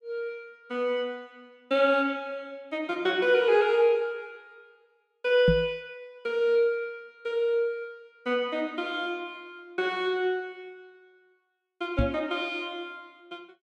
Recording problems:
knock on the microphone; at 5.5 s and at 12 s; peak +6 dB vs average level

